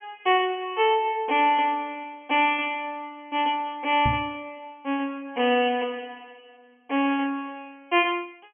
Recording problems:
treble missing; nothing above 3.1 kHz
microphone thump; at 4 s; peak +1 dB vs average level

